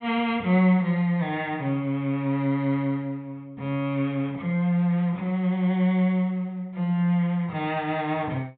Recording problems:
treble missing; nothing above 4 kHz

